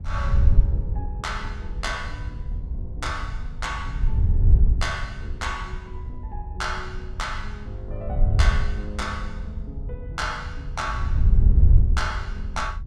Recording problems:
wind on the microphone; below 78 Hz, SNR -7 dB

